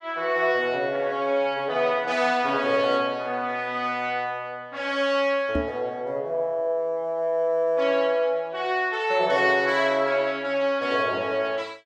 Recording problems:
microphone bump; at 5.5 s; peak 0 dB vs average level

